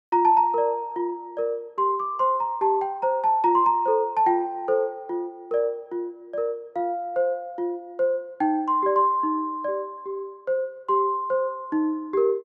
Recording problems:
none

